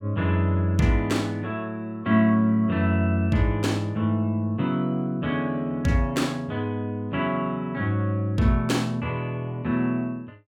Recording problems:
none

